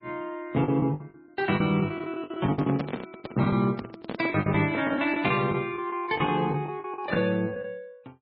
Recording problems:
lossy codec; MP3, log-spectral distance 2 dB, nothing above 4.6 kHz
packet loss; 15% of the sound replaced, filled with the last packet
microphone handling noise; from 2.5 to 5 s; peak 0 dB vs average level

